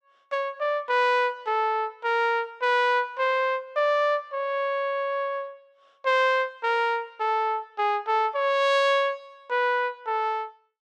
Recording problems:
none

